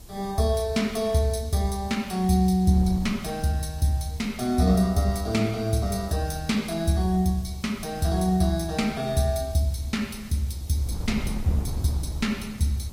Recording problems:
lossy codec; Vorbis, log-spectral distance 3 dB, nothing above 16 kHz
background hiss; SNR 25 dB
wind on the microphone; below 160 Hz, SNR 15 dB

